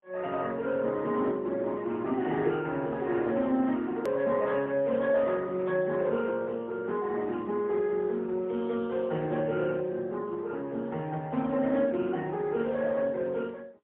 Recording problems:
phone line; 190 Hz to 3.4 kHz, AMR-NB, then MP3
edit click; at 4 s

